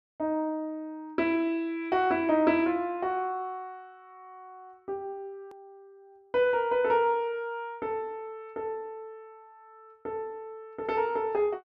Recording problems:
click at an edit; at 5.5 s

